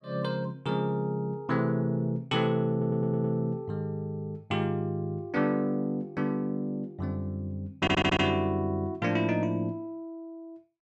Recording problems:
audio stuttering; at 2.5 s and at 8 s

